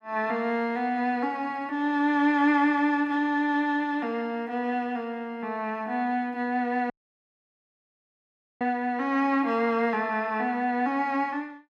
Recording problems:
audio cutting out; at 7 s for 1.5 s

